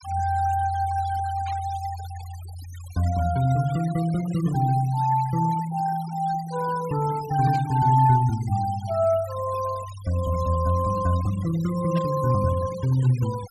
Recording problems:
noise reduction artefacts; signal-to-artefact ratio 19 dB
static burst; at 1.5 s, at 7.5 s and at 12 s; peak -13 dB vs average level

